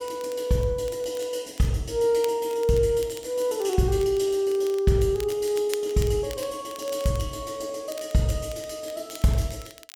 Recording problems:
crackling; vinyl, SNR 20 dB

